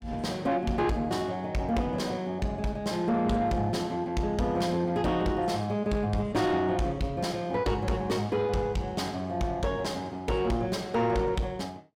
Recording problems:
distortion; soft clipping, signal-to-distortion ratio 11 dB

